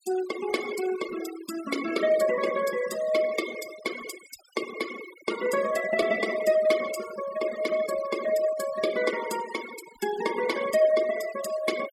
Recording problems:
denoising artefacts; signal-to-artefact ratio 11 dB

